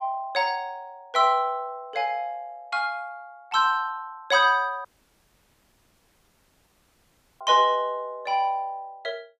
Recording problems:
audio cutting out; at 5 s for 2.5 s

